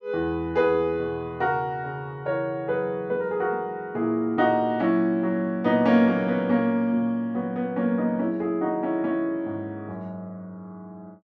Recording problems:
none

